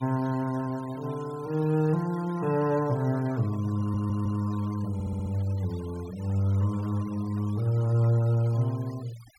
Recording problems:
noise reduction artefacts; signal-to-artefact ratio 22 dB
audio stuttering; at 4 s and at 5 s

